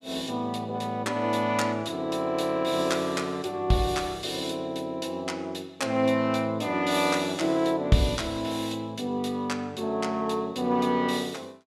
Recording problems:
none

